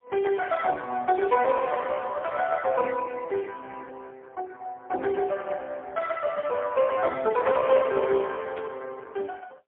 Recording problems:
telephone audio; 320 Hz to 2.6 kHz, AMR-NB, then MP3
static burst; at 8.5 s; peak -25 dB vs average level

